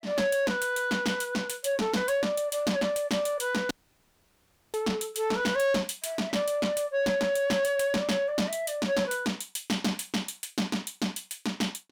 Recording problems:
distortion; soft clipping, signal-to-distortion ratio 11 dB
dropout; at 3.5 s for 1 s

